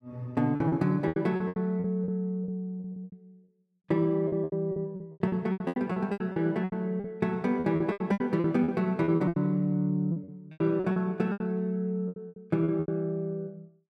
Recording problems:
packet loss; 19% of the sound replaced, filled with repeated pitch periods

